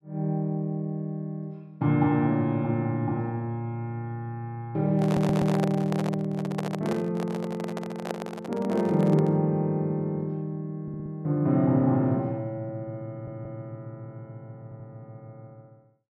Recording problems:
microphone handling noise; from 5 to 9.5 s; peak 0 dB vs average level
stutter; 4 times, first at 5 s

